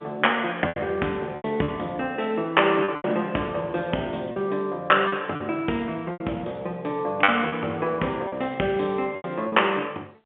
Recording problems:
telephone audio; 240 Hz to 3.3 kHz, G.711
lost packets; 7% of the sound replaced, filled with repeated pitch periods

